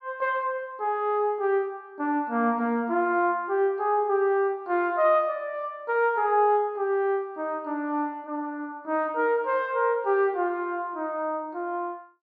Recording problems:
none

